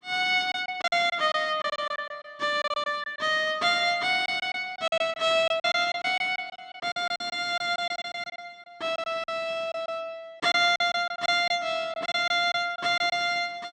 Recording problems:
packet loss; 11% of the sound replaced, filled with silence

